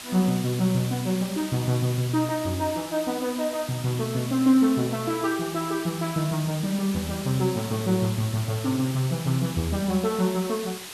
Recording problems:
hiss; slope +1 dB per octave, SNR 11 dB

